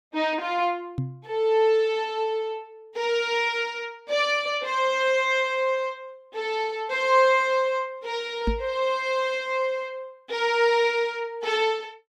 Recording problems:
microphone thump; at 1 s and at 8.5 s; peak +1 dB vs average level

